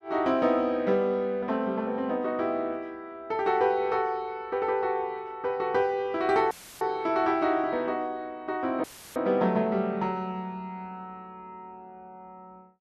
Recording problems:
audio cutting out; at 6.5 s and at 9 s; filled with static

